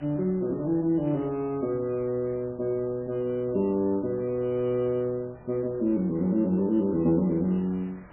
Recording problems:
codec artefacts; MP3, log-spectral distance 3 dB, nothing above 2.4 kHz
hiss; SNR 22 dB

